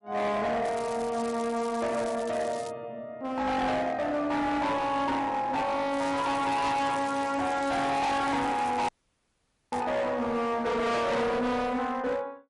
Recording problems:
lossy compression; MP3, log-spectral distance 2 dB, nothing above 11 kHz
distorted audio; hard clipping, signal-to-distortion ratio 7 dB
crackle; from 0.5 to 2.5 s and from 6 to 10 s; loose cable, SNR 19 dB
dropout; at 9 s for 1 s

